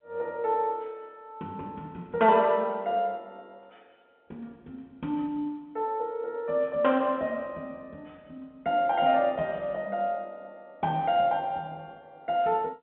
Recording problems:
telephone audio; 240 Hz to 3.9 kHz, G.711

